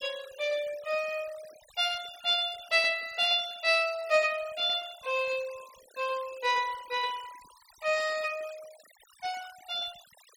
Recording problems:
denoising artefacts; signal-to-artefact ratio 20 dB

